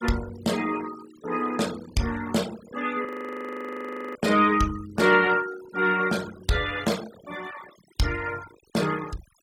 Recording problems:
denoising artefacts; signal-to-artefact ratio 16 dB
audio freezing; at 3 s for 1 s

